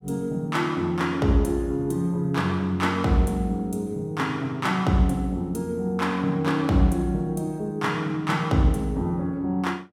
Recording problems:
none

